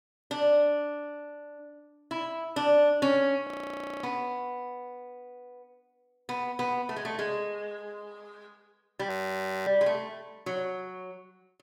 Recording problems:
frozen audio; at 3.5 s for 0.5 s and at 9 s for 0.5 s

